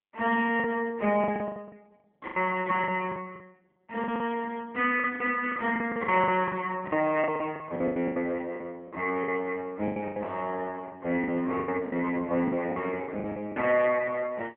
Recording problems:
phone line; 280 Hz to 3.2 kHz, AMR-NB
packet loss; 14% of the sound replaced, filled with the last packet

